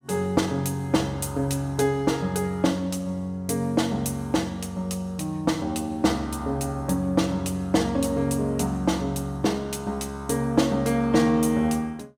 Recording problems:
none

